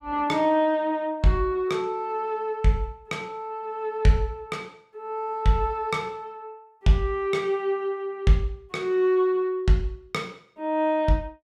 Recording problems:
none

